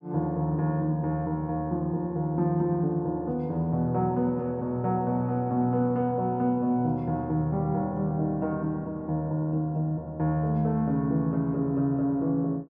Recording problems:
none

